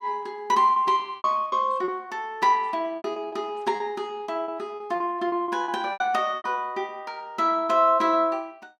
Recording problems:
packet loss; 10% of the sound replaced, filled with repeated pitch periods

